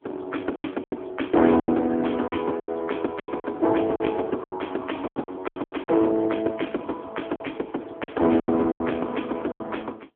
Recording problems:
phone line; 220 Hz to 3.4 kHz, AMR-NB
distorted audio; hard clipping, uneven, signal-to-distortion ratio 15 dB
packet loss; 12% of the sound replaced, filled with silence

